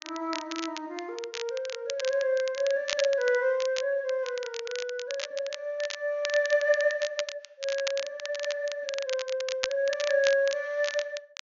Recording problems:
treble cut off; nothing above 6.9 kHz
crackling; vinyl, SNR 9 dB

